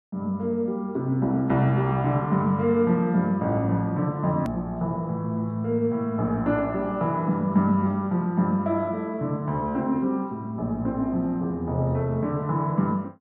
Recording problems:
click at an edit; at 4.5 s

